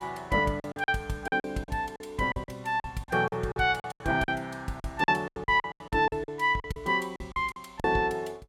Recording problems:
lost packets; 16% of the sound replaced, filled with silence

